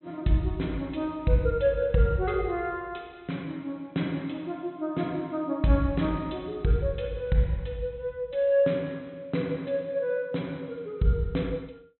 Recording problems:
treble missing; nothing above 4 kHz

